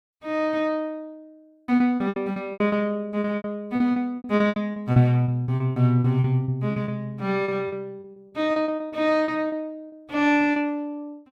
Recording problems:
packet loss; 16% of the sound replaced, filled with repeated pitch periods

